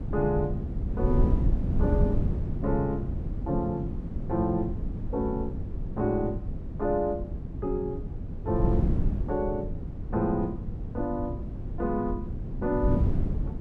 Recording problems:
wind noise; below 150 Hz, SNR 1 dB

